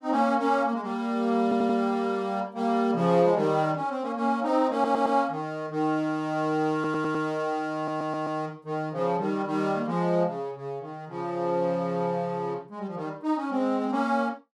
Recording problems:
stutter; 4 times, first at 1.5 s

